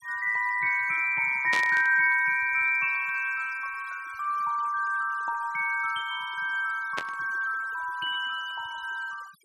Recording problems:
denoising artefacts; signal-to-artefact ratio 23 dB
static burst; at 1.5 s and at 7 s; peak 0 dB vs average level

